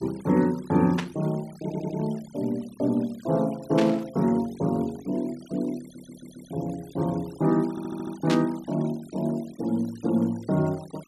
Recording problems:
noise reduction artefacts; signal-to-artefact ratio 23 dB
burst of static; at 1 s, at 4 s and at 8.5 s; peak 0 dB vs average level
stutter; at 1.5 s, at 6 s and at 7.5 s

